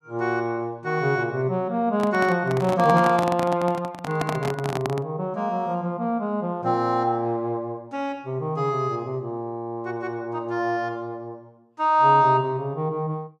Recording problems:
microphone handling noise; from 2 to 5 s; peak 0 dB vs average level

